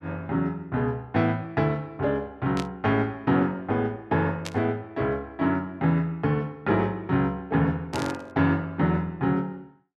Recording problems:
static burst; at 2.5 s, at 4.5 s and at 8 s; peak -4 dB vs average level

